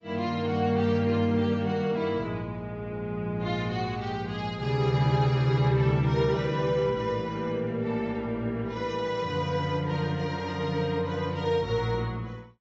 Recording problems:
lossy compression; AAC, log-spectral distance 2 dB

